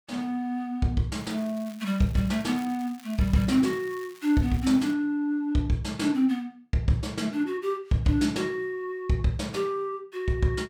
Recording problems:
crackling; from 1 to 5 s; loose cable, SNR 23 dB

